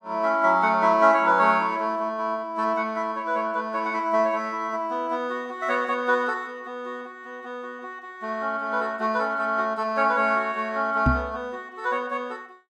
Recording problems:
microphone thump; at 11 s; peak +5 dB vs average level

